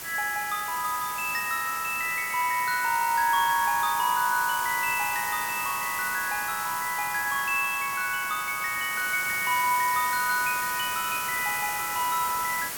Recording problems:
background hiss; slope -1 dB per octave, SNR 6 dB

